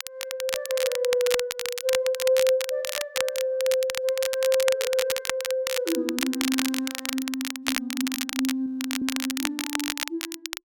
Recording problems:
crackling; vinyl, SNR 3 dB
frozen audio; at 8.5 s

